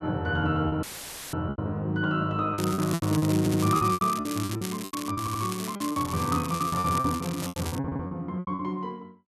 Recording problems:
lost packets; 16% of the sound replaced, filled with repeated pitch periods
dropout; at 1 s for 0.5 s; filled with static
crackle; from 2.5 to 8 s; loose cable, SNR 10 dB
audio stuttering; at 3.5 s, at 5 s and at 8 s

